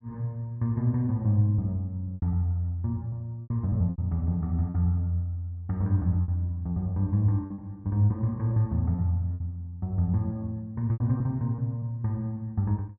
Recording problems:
packet loss; 7% of the sound replaced, filled with repeated pitch periods

